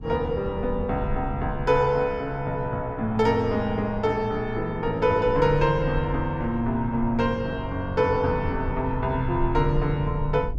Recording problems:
rumble; below 88 Hz, SNR 11 dB

